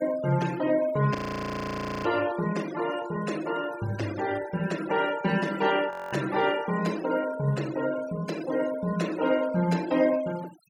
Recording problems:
denoising artefacts; signal-to-artefact ratio 15 dB
audio freezing; at 1 s for 1 s and at 6 s

